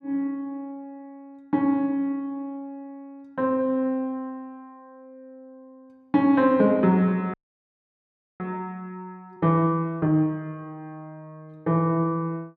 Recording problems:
frozen audio; at 7.5 s for 1 s

